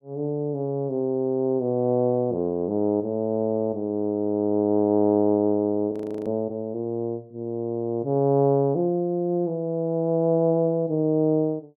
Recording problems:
audio freezing; at 6 s

